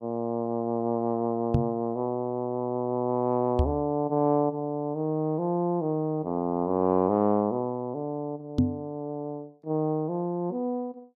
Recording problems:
knock on the microphone; at 1.5 s, at 3.5 s and at 8.5 s; peak +9 dB vs average level

